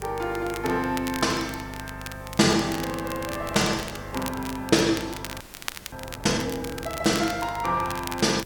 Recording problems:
hum; 50 Hz, harmonics up to 600 Hz, SNR 17 dB
hiss; SNR 27 dB
wind on the microphone; below 720 Hz, SNR 22 dB
crackling; vinyl, SNR 13 dB
audio freezing; at 5.5 s for 0.5 s

